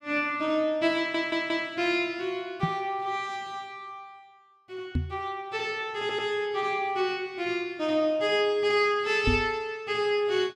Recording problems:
stutter; at 1 s and at 6 s
knock on the microphone; at 2.5 s, at 5 s and at 9.5 s; peak +4 dB vs average level

